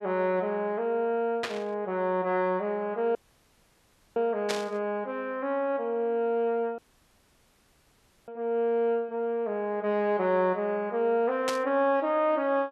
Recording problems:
burst of static; at 1.5 s, at 4.5 s and at 11 s; peak +1 dB vs average level
audio cutting out; at 3 s for 1 s and at 7 s for 1.5 s

